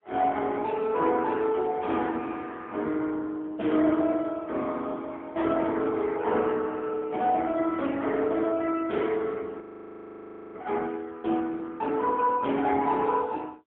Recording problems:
phone line; 220 Hz to 3.5 kHz, AMR-NB, then MP3
frozen audio; at 9.5 s for 1 s

